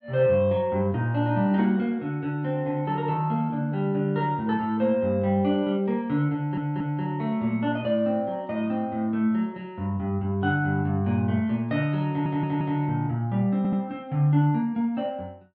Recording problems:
audio stuttering; at 6.5 s, at 12 s and at 14 s

